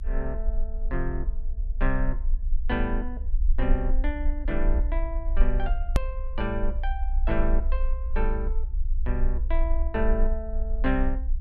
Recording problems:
rumble; below 44 Hz, strongest tone 26 Hz, SNR -3 dB
hard cut with a click; at 6 s

